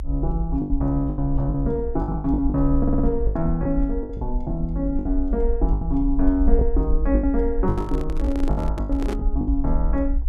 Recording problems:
low-frequency rumble; below 54 Hz, SNR 2 dB
lost packets; 13% of the sound replaced, filled with the last packet
audio stuttering; at 3 s
handling noise; from 7.5 to 9 s; peak -3 dB vs average level

